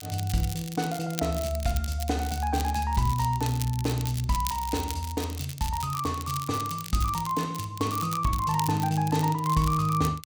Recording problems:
crackle; vinyl, SNR 11 dB

